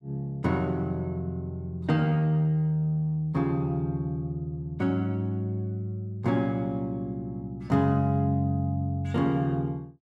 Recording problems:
none

